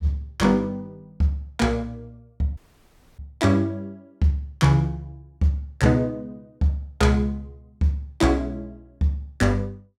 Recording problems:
dropout; at 2.5 s for 0.5 s

